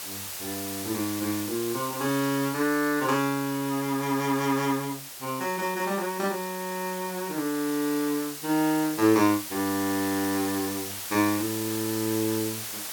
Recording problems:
hiss; slope +1 dB per octave, SNR 7 dB

